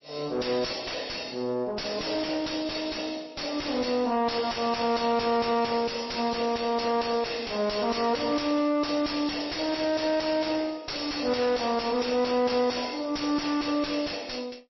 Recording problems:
codec artefacts; MP3, log-spectral distance 9 dB, nothing above 5.7 kHz
distorted audio; soft clipping, signal-to-distortion ratio 4 dB

